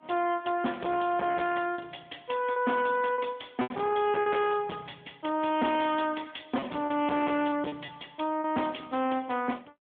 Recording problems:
telephone audio; 190 Hz to 3.5 kHz, AMR-NB
distorted audio; hard clipping, signal-to-distortion ratio 10 dB
packet loss; 5% of the sound replaced, filled with repeated pitch periods

